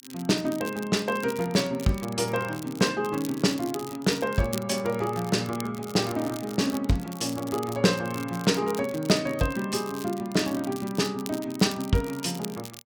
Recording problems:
crackling; vinyl, SNR 16 dB

